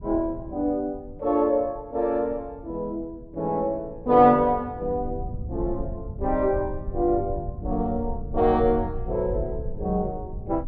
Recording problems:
low-frequency rumble; below 100 Hz, SNR 11 dB

